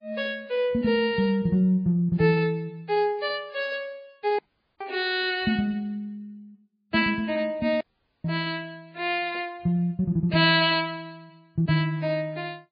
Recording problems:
lossy codec; MP3, log-spectral distance 2 dB, nothing above 4.6 kHz
audio cutting out; at 4.5 s and at 8 s

